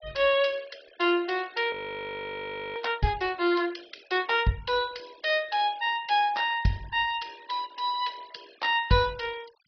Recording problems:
treble cut off; nothing above 5.5 kHz
denoising artefacts; signal-to-artefact ratio 24 dB
frozen audio; at 1.5 s for 1 s

